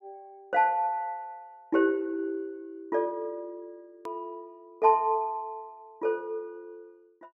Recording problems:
hard cut with a click; at 4 s

